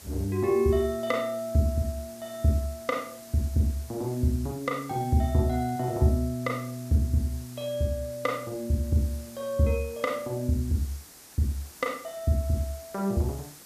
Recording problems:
background hiss; SNR 19 dB

